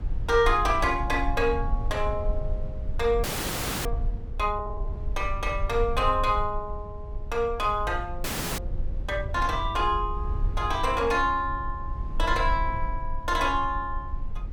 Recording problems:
low-frequency rumble; below 60 Hz, SNR 7 dB
audio freezing; at 3 s for 0.5 s and at 8 s

